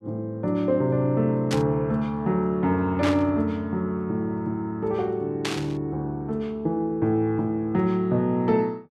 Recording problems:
burst of static; at 1.5 s, at 3 s and at 5.5 s; peak 0 dB vs average level

